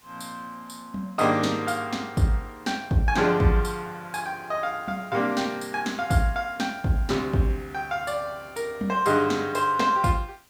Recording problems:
background hiss; slope -1 dB per octave, SNR 28 dB

